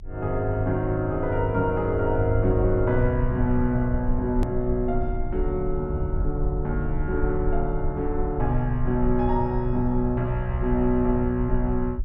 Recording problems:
treble cut off; nothing above 8 kHz
low-frequency rumble; below 60 Hz, strongest tone 22 Hz, SNR 6 dB
edit click; at 4.5 s

